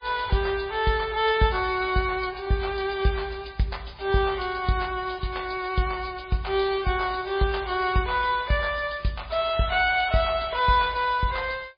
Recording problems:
codec artefacts; MP3, log-spectral distance 6 dB, nothing above 4.8 kHz

